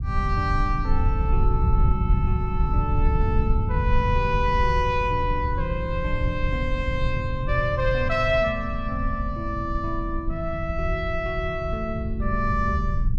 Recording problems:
low-frequency rumble; below 92 Hz, SNR 0 dB

